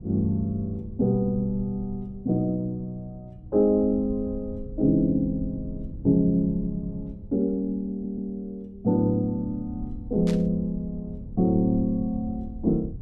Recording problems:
low-frequency rumble; below 100 Hz, SNR 15 dB
stutter; at 8 s
static burst; at 10 s; peak -9 dB vs average level

